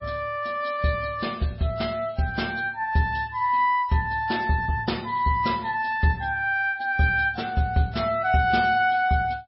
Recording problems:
codec artefacts; MP3, log-spectral distance 3 dB, nothing above 5.5 kHz

